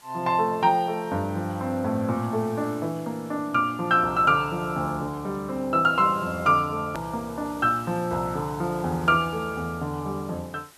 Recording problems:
hiss; slope 0 dB per octave, SNR 24 dB
edit click; at 7 s

